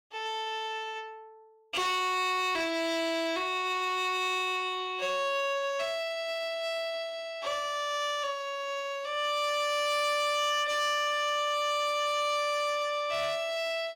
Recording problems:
distortion; hard clipping, uneven, signal-to-distortion ratio 11 dB

